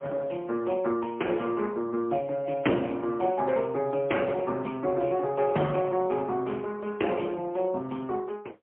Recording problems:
phone line; 190 Hz to 3.3 kHz, AMR-NB, then MP3

